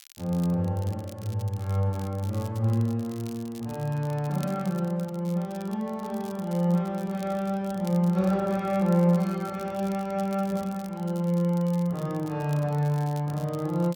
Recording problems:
crackle; vinyl, SNR 23 dB

